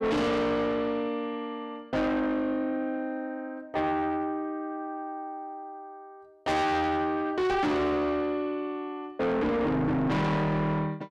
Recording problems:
distorted audio; soft clipping, signal-to-distortion ratio 6 dB

